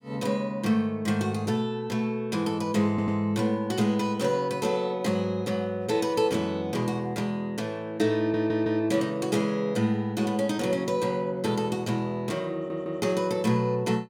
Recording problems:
stutter; at 3 s, at 8 s and at 13 s

